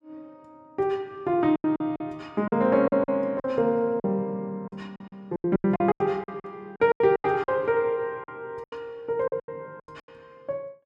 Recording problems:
lost packets; 15% of the sound replaced, filled with silence

